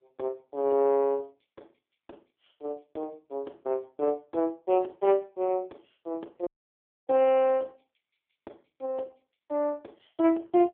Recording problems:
telephone audio; 280 Hz to 3.7 kHz, AMR-NB
audio cutting out; at 6.5 s for 0.5 s

